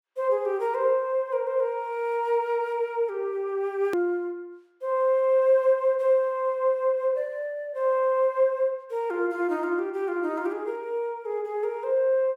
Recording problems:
edit click; at 4 s

